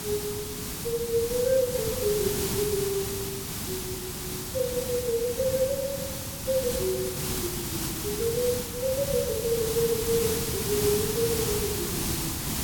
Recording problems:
hiss; SNR 1 dB

